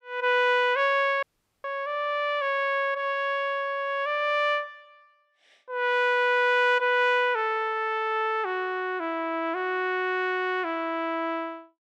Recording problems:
dropout; at 1 s

